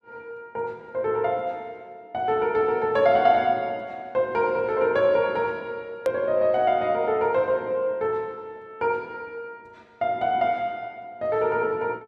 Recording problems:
click at an edit; at 6 s

